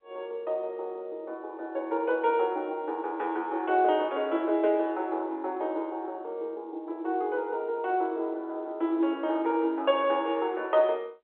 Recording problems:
phone line; 280 Hz to 3.8 kHz, G.711

